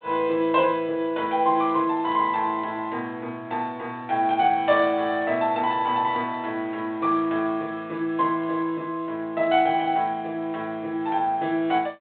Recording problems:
telephone audio; 190 Hz to 4 kHz, G.726

